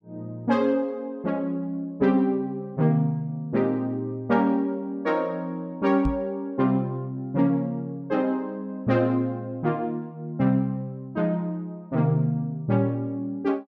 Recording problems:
knock on the microphone; at 6 s; peak +1 dB vs average level

